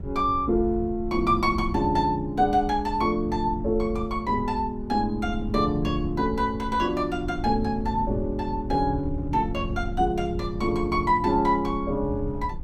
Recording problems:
wind noise; below 110 Hz, SNR 10 dB

